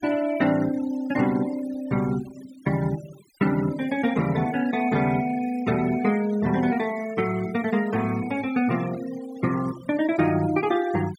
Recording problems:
noise reduction artefacts; signal-to-artefact ratio 17 dB

